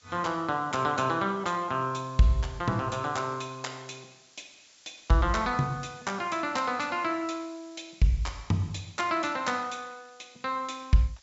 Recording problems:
low-pass filter; nothing above 8 kHz
hiss; slope +2 dB per octave, SNR 27 dB

